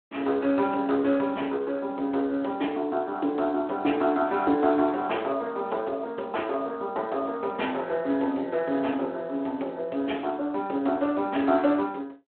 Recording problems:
phone line; 240 Hz to 3.7 kHz, Speex

